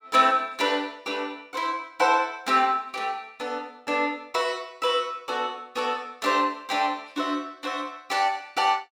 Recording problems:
none

